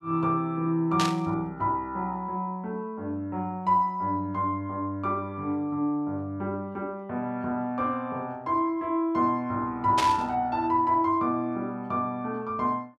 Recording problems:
static burst; at 1 s and at 10 s; peak +3 dB vs average level

